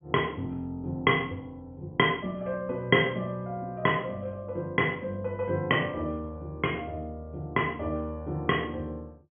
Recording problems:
low-pass filter; nothing above 3.2 kHz

